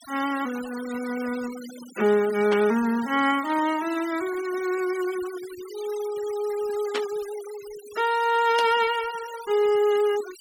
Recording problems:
denoising artefacts; signal-to-artefact ratio 16 dB
burst of static; at 2.5 s, at 7 s and at 8.5 s; peak -1 dB vs average level

